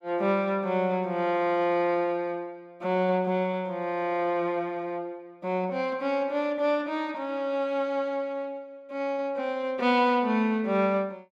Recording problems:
none

